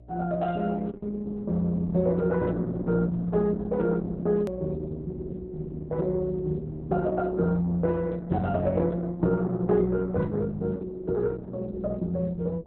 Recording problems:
codec artefacts; Opus, log-spectral distance 2 dB, nothing above 13.1 kHz
electrical hum; 60 Hz, harmonics up to 720 Hz, SNR 22 dB
hard cut with a click; at 4.5 s

